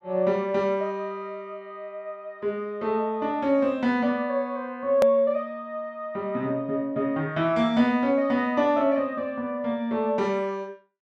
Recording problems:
hard cut with a click; at 5 s

